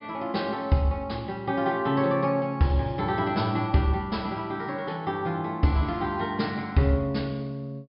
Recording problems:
low-pass filter; nothing above 5.5 kHz

